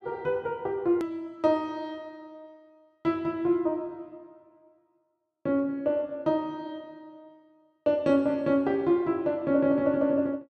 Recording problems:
click at an edit; at 1 s

